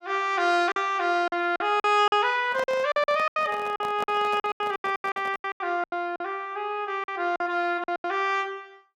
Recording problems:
lost packets; 15% of the sound replaced, filled with silence
microphone handling noise; from 2.5 to 5.5 s; peak -6 dB vs average level

